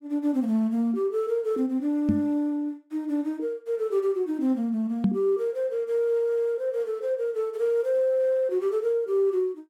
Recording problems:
knock on the microphone; at 2 s and at 5 s; peak +6 dB vs average level

